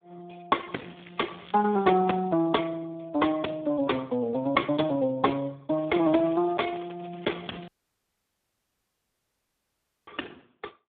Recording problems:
telephone audio; 190 Hz to 2.1 kHz, Speex
crackling; from 0.5 to 2 s and from 6 to 7.5 s; loose cable, SNR 24 dB
dropout; at 7.5 s for 2.5 s

